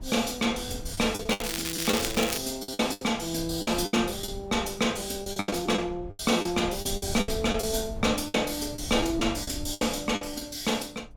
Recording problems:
wind noise; below 110 Hz, SNR 14 dB
packet loss; 11% of the sound replaced, filled with the last packet
crackling; from 1.5 to 2.5 s; loose cable, SNR 4 dB

